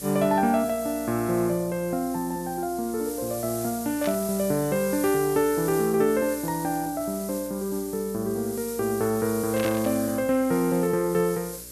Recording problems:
electrical hum; 60 Hz, harmonics up to 600 Hz, SNR 24 dB
hiss; SNR 12 dB
static burst; at 4 s and at 9.5 s; peak -5 dB vs average level

